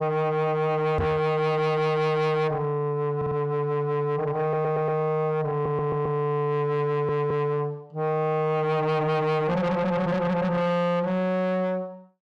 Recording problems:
distortion; soft clipping, signal-to-distortion ratio 6 dB
knock on the microphone; at 1 s; peak +3 dB vs average level
audio stuttering; 4 times, first at 3 s

